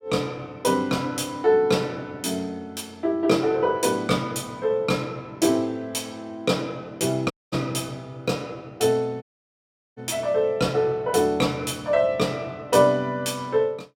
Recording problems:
dropout; at 7.5 s and at 9 s for 0.5 s

